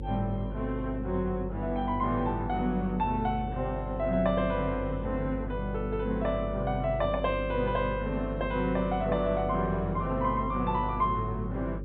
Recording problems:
low-pass filter; nothing above 4 kHz
electrical hum; 50 Hz, harmonics up to 550 Hz, SNR 7 dB

